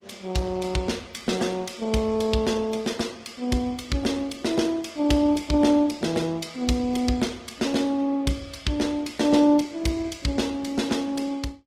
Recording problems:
codec artefacts; Opus, log-spectral distance 4 dB, nothing above 18.9 kHz

